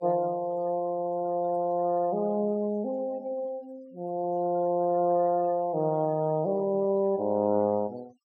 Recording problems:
noise reduction artefacts; signal-to-artefact ratio 27 dB

